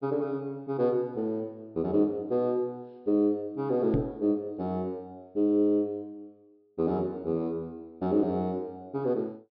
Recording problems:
treble cut off; nothing above 5.3 kHz
microphone bump; at 4 s; peak +6 dB vs average level

